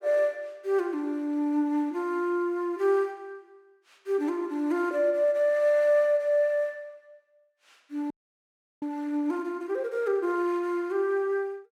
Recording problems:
audio freezing; at 8 s for 0.5 s

